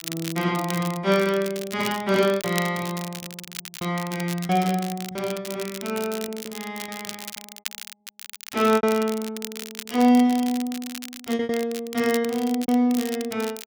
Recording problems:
crackle; vinyl, SNR 12 dB
packet loss; 8% of the sound replaced, filled with repeated pitch periods

